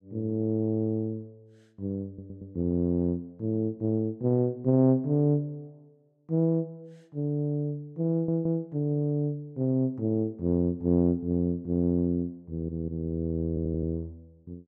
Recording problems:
stutter; 4 times, first at 2 s

